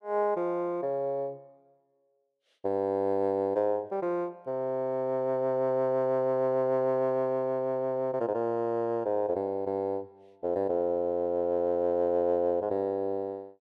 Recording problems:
none

